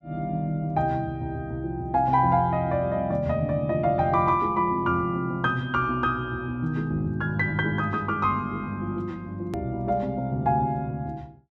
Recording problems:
click at an edit; at 9.5 s

